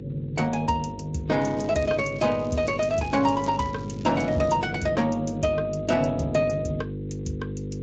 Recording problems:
lossy codec; Speex, then MP3, log-spectral distance 3 dB, nothing above 7.3 kHz
hum; 50 Hz, harmonics up to 500 Hz, SNR 9 dB
crackle; from 1.5 to 4.5 s; loose cable, SNR 26 dB

